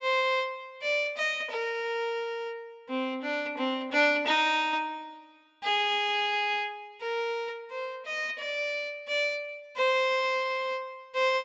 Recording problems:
treble missing; nothing above 8 kHz

